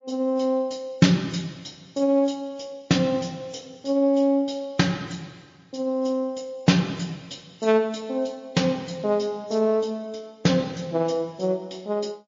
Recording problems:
lossy compression; MP3, log-spectral distance 3 dB

